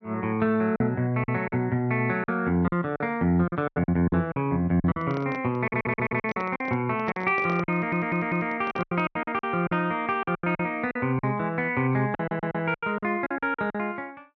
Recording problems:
treble missing; nothing above 6 kHz
packet loss; 13% of the sound replaced, filled with silence
microphone handling noise; from 5 to 9 s; peak -7 dB vs average level
audio stuttering; at 5.5 s, at 7.5 s and at 12 s

